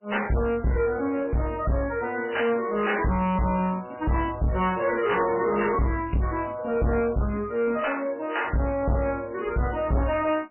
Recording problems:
lossy compression; MP3, log-spectral distance 6 dB, nothing above 2.7 kHz
distorted audio; soft clipping, signal-to-distortion ratio 6 dB

